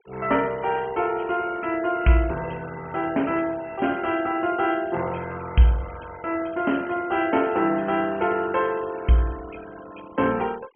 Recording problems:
low-pass filter; nothing above 3.2 kHz
denoising artefacts; signal-to-artefact ratio 21 dB

